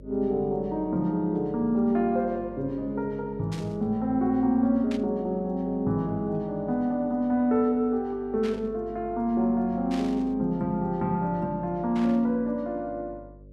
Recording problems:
hum; 50 Hz, harmonics up to 600 Hz, SNR 22 dB
burst of static; 5 times, first at 3.5 s; peak -10 dB vs average level

